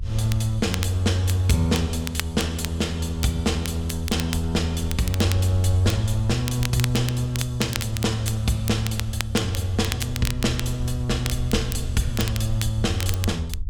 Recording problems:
rumble; below 78 Hz, SNR 10 dB
crackling; vinyl, SNR 10 dB

